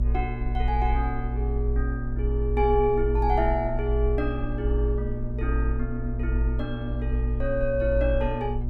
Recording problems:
electrical hum; 60 Hz, harmonics up to 600 Hz, SNR 5 dB
low-frequency rumble; below 56 Hz, strongest tone 54 Hz, SNR 0 dB

